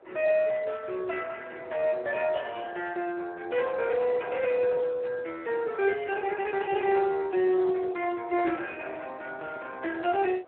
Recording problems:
telephone audio; 300 Hz to 3.7 kHz, Speex
wind on the microphone; below 770 Hz, SNR 24 dB

